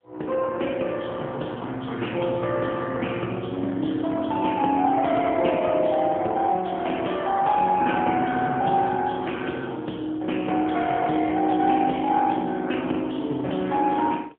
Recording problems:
phone line; 240 Hz to 3.3 kHz, AMR-NB, then MP3

